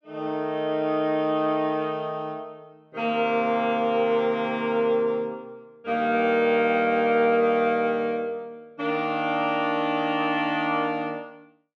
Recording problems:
none

